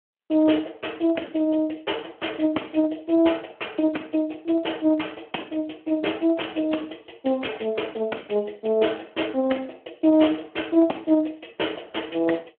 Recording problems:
telephone audio; 240 Hz to 3.3 kHz, Speex

